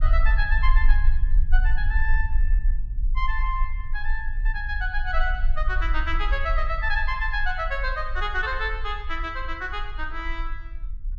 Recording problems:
low-frequency rumble; below 42 Hz, strongest tone 20 Hz, SNR -1 dB

